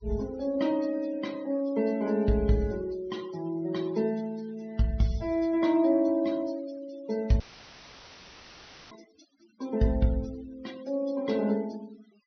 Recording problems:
treble missing; nothing above 6.1 kHz
noise reduction artefacts; signal-to-artefact ratio 24 dB
dropout; at 7.5 s for 1.5 s; filled with static

